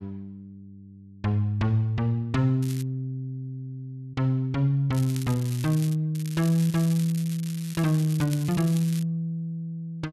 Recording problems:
crackle; at 2.5 s, from 5 to 6 s and from 6 to 9 s; loose cable, SNR 16 dB

